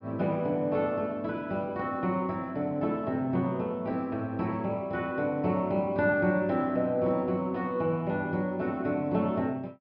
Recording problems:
low-pass filter; nothing above 5.5 kHz

